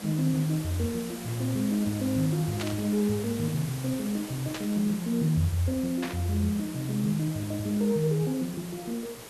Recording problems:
background hiss; slope -3 dB per octave, SNR 12 dB
static burst; at 2.5 s, at 4.5 s and at 6 s; peak -3 dB vs average level

